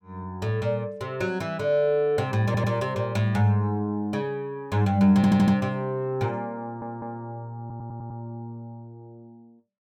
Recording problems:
stutter; 4 times, first at 2.5 s

